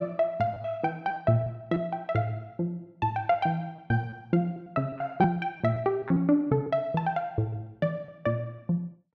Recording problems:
lost packets; 6% of the sound replaced, filled with repeated pitch periods

